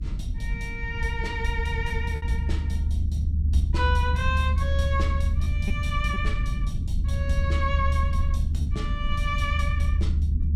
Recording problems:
low-frequency rumble; below 76 Hz, strongest tone 74 Hz, SNR -5 dB
lost packets; 2% of the sound replaced, filled with repeated pitch periods

